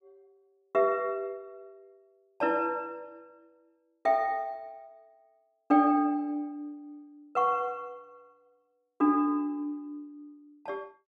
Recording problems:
none

